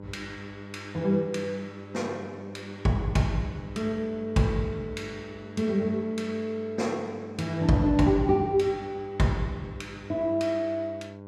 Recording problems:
hum; 50 Hz, harmonics up to 1.5 kHz, SNR 15 dB

